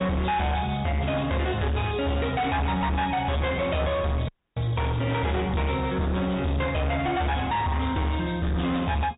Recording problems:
treble missing; nothing above 3.8 kHz
lossy codec; MP3, log-spectral distance 2 dB
distortion; hard clipping, signal-to-distortion ratio 7 dB
audio cutting out; at 4.5 s

